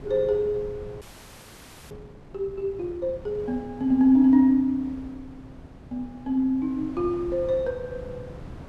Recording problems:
wind on the microphone; below 340 Hz, SNR 19 dB
frozen audio; at 1 s for 1 s

